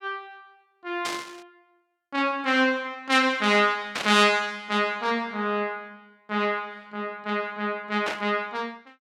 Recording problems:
static burst; at 1 s, at 4 s and at 8 s; peak -1 dB vs average level

